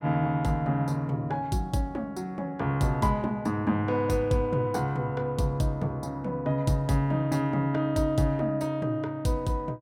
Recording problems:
none

